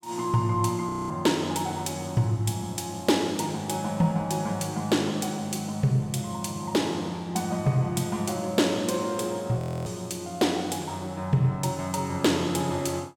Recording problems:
frozen audio; at 1 s and at 9.5 s

